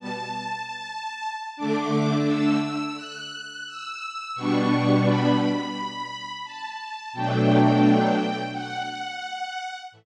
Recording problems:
none

